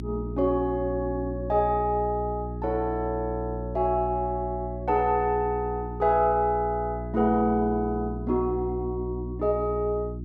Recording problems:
hum; 60 Hz, harmonics up to 360 Hz, SNR 8 dB

